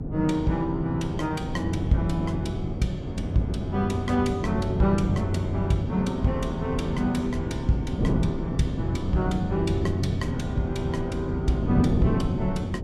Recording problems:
hum; 60 Hz, harmonics up to 360 Hz, SNR 18 dB
wind noise; below 250 Hz, SNR 3 dB

